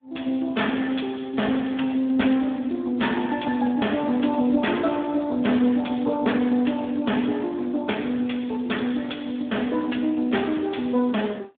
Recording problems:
telephone audio; 220 Hz to 3.5 kHz, Speex
distorted audio; hard clipping, signal-to-distortion ratio 11 dB

